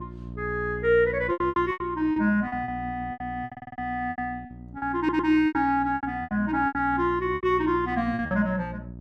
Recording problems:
electrical hum; 60 Hz, harmonics up to 660 Hz, SNR 14 dB
lost packets; 15% of the sound replaced, filled with repeated pitch periods
audio stuttering; at 3.5 s and at 5 s

